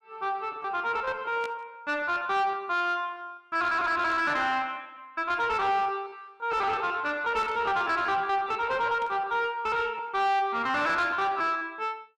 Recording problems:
distortion; soft clipping, signal-to-distortion ratio 11 dB
packet loss; 15% of the sound replaced, filled with repeated pitch periods
static burst; 4 times, first at 1.5 s; peak -10 dB vs average level

